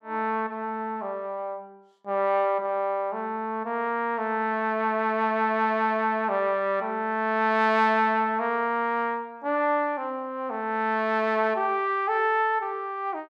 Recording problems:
none

